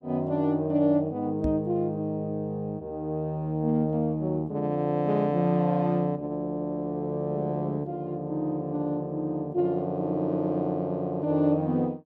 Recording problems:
microphone bump; at 1.5 s; peak 0 dB vs average level

